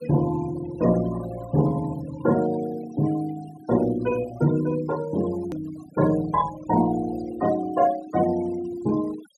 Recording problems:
noise reduction artefacts; signal-to-artefact ratio 17 dB
edit click; at 5.5 s

